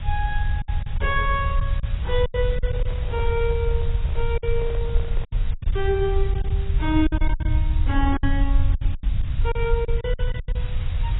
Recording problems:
lossy codec; AAC, log-spectral distance 4 dB, nothing above 3.5 kHz
hiss; SNR 17 dB
low-frequency rumble; below 74 Hz, SNR -2 dB
packet loss; 11% of the sound replaced, filled with silence
handling noise; from 2.5 to 5.5 s; peak -8 dB vs average level

